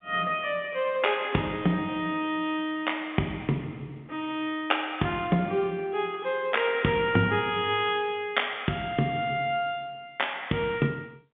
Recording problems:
phone line; 130 Hz to 3.6 kHz, G.711

